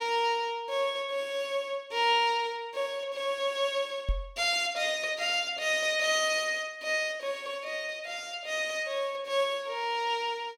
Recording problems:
knock on the microphone; at 4 s; peak +2 dB vs average level

